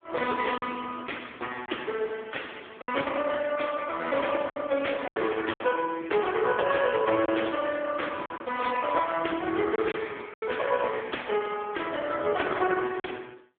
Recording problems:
telephone audio; 280 Hz to 3.4 kHz, AMR-NB
packet loss; 4% of the sound replaced, filled with silence

